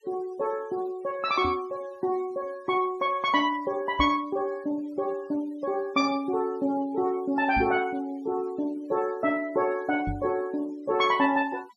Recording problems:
denoising artefacts; signal-to-artefact ratio 24 dB
knock on the microphone; 4 times, first at 1.5 s; peak -1 dB vs average level

